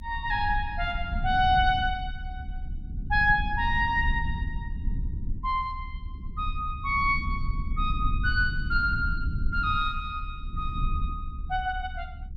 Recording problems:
low-frequency rumble; below 76 Hz, SNR 6 dB

